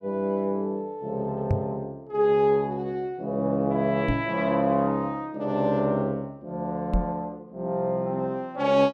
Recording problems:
microphone bump; at 1.5 s, at 4 s and at 7 s; peak +5 dB vs average level

